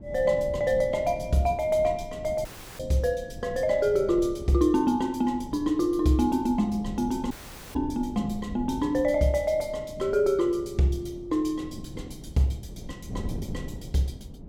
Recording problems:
wind noise; below 230 Hz, SNR 14 dB
dropout; at 2.5 s and at 7.5 s

